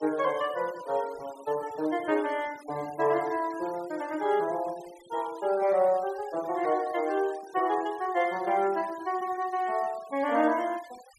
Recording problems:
noise reduction artefacts; signal-to-artefact ratio 21 dB

